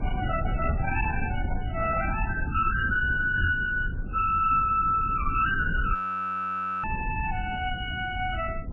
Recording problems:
lossy codec; MP3, then MP3, log-spectral distance 4 dB, nothing above 2.7 kHz
distortion; hard clipping, uneven, signal-to-distortion ratio 9 dB
low-frequency rumble; below 150 Hz, SNR 6 dB
knock on the microphone; at 3.5 s; peak +4 dB vs average level
audio freezing; at 6 s for 1 s

